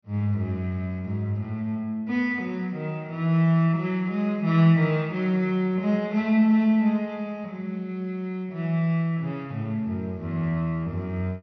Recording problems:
low-pass filter; nothing above 6 kHz

